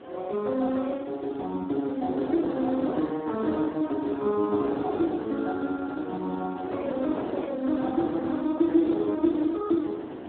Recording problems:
telephone audio; 190 Hz to 2.2 kHz, Speex
background hiss; SNR 27 dB
wind noise; below 610 Hz, SNR 8 dB

